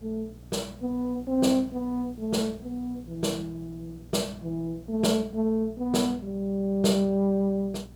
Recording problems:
hum; 60 Hz, harmonics up to 540 Hz, SNR 20 dB
hiss; SNR 27 dB

